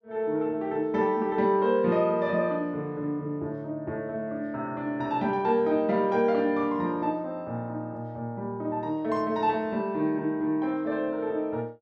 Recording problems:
none

